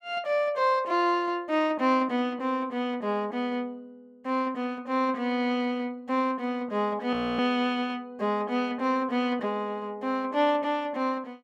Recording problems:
frozen audio; at 7 s

